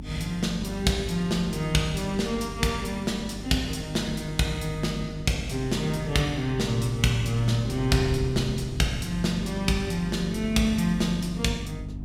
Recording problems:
mains hum; 50 Hz, harmonics up to 300 Hz, SNR 11 dB
wind on the microphone; below 130 Hz, SNR 16 dB

